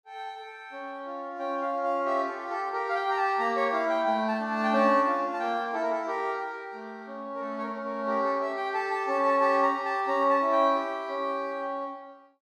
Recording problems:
none

